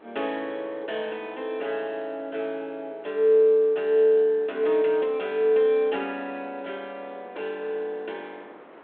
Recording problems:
telephone audio; 300 Hz to 3.4 kHz, G.726
wind on the microphone; below 1.2 kHz, SNR 25 dB

